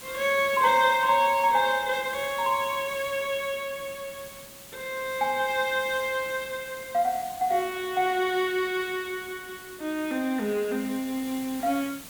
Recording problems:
background hiss; slope -1 dB per octave, SNR 16 dB

